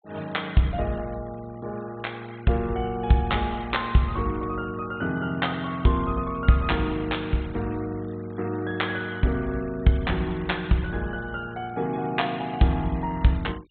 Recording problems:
treble missing; nothing above 4 kHz
denoising artefacts; signal-to-artefact ratio 25 dB

